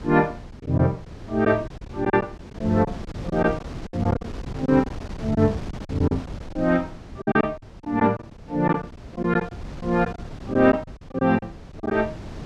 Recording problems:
wind noise; below 310 Hz, SNR 13 dB
lost packets; 12% of the sound replaced, filled with silence

